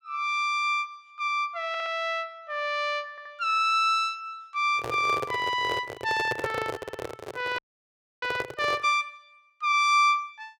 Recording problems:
audio stuttering; at 1.5 s, at 3 s and at 7 s
microphone handling noise; from 4.5 to 9 s; peak 0 dB vs average level
frozen audio; at 7.5 s for 0.5 s

